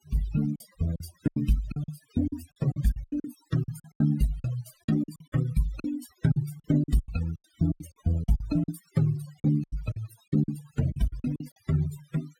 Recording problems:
denoising artefacts; signal-to-artefact ratio 17 dB
lost packets; 16% of the sound replaced, filled with silence

